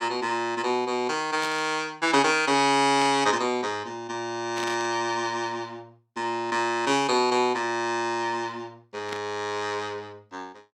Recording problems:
static burst; 4 times, first at 1.5 s; peak -6 dB vs average level

